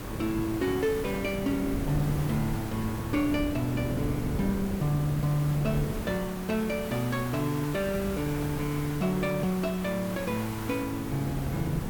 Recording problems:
hiss; SNR 12 dB
wind noise; below 310 Hz, SNR 7 dB

